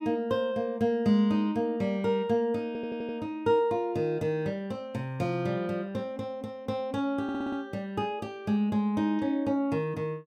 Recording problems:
stutter; at 2.5 s and at 7 s

